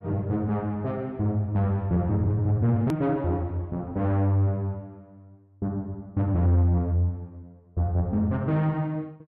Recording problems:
distorted audio; soft clipping, signal-to-distortion ratio 12 dB
edit click; at 3 s

